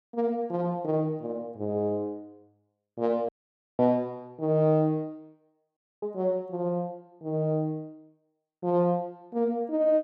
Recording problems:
dropout; at 3.5 s for 0.5 s and at 6 s

